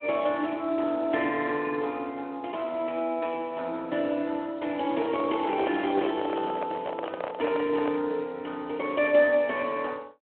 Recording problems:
phone line; 220 Hz to 3.3 kHz, Speex
microphone handling noise; from 5 to 8 s; peak 0 dB vs average level

